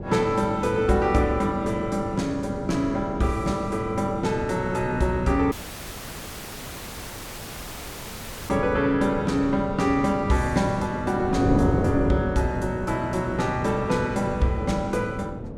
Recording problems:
hum; 50 Hz, harmonics up to 650 Hz, SNR 21 dB
wind noise; below 410 Hz, SNR 8 dB
dropout; at 5.5 s for 3 s

